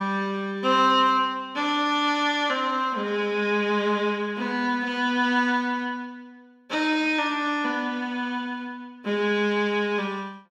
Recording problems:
none

